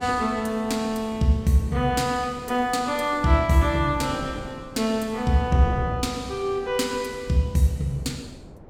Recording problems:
wind noise; below 410 Hz, SNR 17 dB

